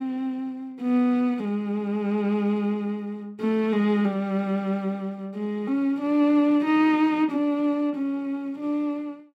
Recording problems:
none

